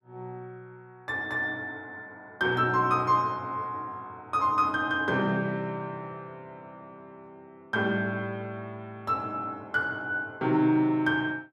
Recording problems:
none

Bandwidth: 14 kHz